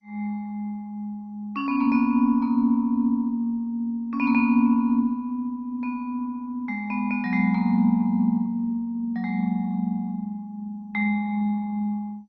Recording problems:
codec artefacts; MP2, log-spectral distance 2 dB, nothing above 5.2 kHz

